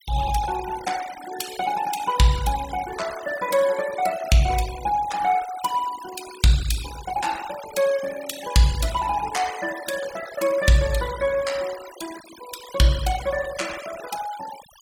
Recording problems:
noise reduction artefacts; signal-to-artefact ratio 14 dB

